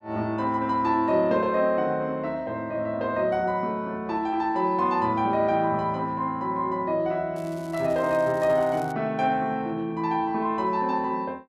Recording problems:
crackling; from 7.5 to 9 s; loose cable, SNR 25 dB

